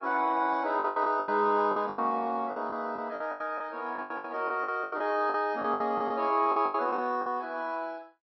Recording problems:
lossy compression; Opus, then MP3, log-spectral distance 2 dB, nothing above 5 kHz
lost packets; 15% of the sound replaced, filled with the last packet

